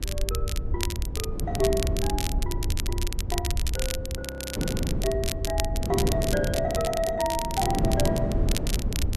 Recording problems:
low-frequency rumble; below 76 Hz, SNR 3 dB
wind noise; below 310 Hz, SNR 1 dB
crackle; vinyl, SNR 3 dB
frozen audio; at 4 s

